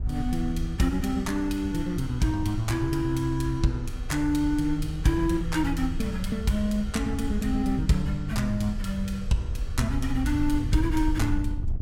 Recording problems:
wind noise; below 78 Hz, SNR 6 dB

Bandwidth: 17 kHz